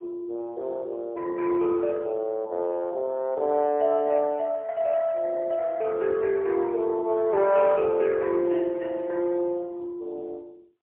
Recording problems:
telephone audio; 300 Hz to 3.1 kHz, AMR-NB, then MP3

